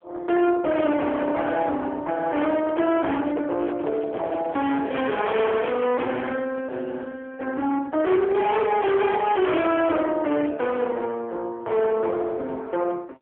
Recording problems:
telephone audio; 260 Hz to 3.5 kHz, AMR-NB
distortion; hard clipping, uneven, signal-to-distortion ratio 6 dB
microphone handling noise; from 2.5 to 6 s; peak -4 dB vs average level

